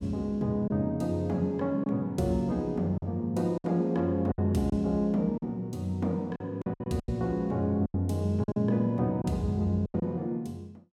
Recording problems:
lost packets; 7% of the sound replaced, filled with silence

